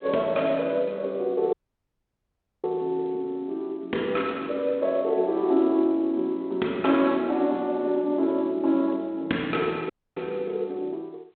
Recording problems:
phone line; 220 Hz to 3.8 kHz, G.726
audio cutting out; at 1.5 s for 1 s and at 10 s

